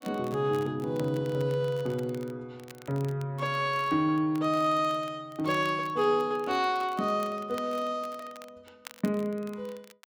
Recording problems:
crackle; vinyl, SNR 23 dB

